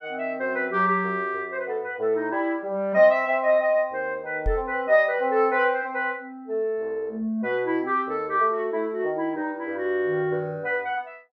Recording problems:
knock on the microphone; at 4.5 s; peak 0 dB vs average level

